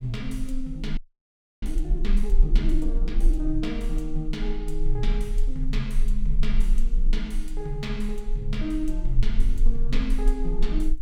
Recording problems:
rumble; below 32 Hz, strongest tone 26 Hz, SNR -3 dB
frozen audio; at 1 s for 0.5 s

